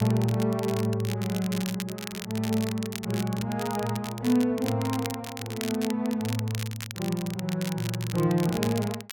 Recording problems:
crackling; vinyl, SNR 10 dB

